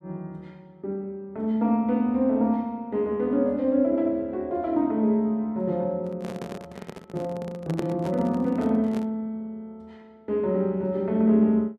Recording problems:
microphone handling noise; from 6 to 9 s; peak -3 dB vs average level

